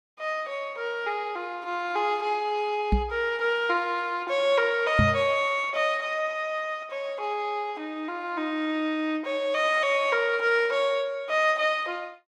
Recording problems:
knock on the microphone; at 3 s and at 5 s; peak +6 dB vs average level

